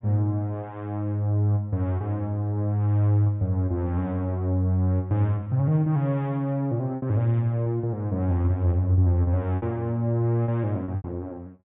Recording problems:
treble missing; nothing above 4 kHz
packet loss; 3% of the sound replaced, filled with repeated pitch periods

